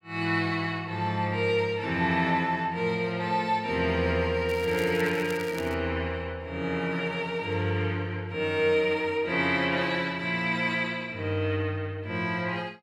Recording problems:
crackling; from 4.5 to 5.5 s; loose cable, SNR 17 dB

